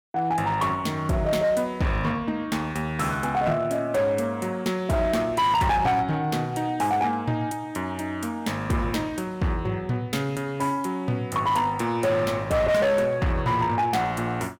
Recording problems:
distorted audio; hard clipping, signal-to-distortion ratio 11 dB

